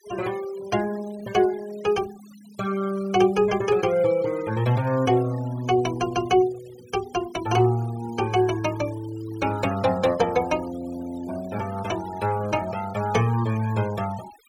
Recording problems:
denoising artefacts; signal-to-artefact ratio 19 dB

